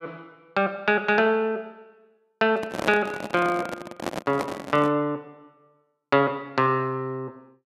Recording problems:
microphone handling noise; from 2.5 to 5 s; peak 0 dB vs average level

